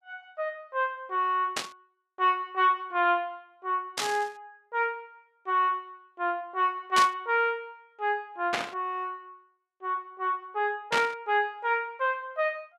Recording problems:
static burst; 5 times, first at 1.5 s; peak +5 dB vs average level

